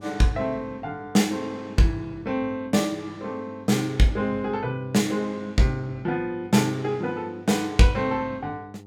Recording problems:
electrical hum; 50 Hz, harmonics up to 900 Hz, SNR 21 dB

